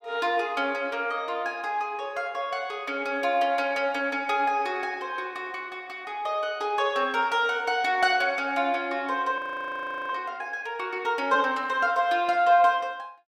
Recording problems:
frozen audio; at 9.5 s for 0.5 s

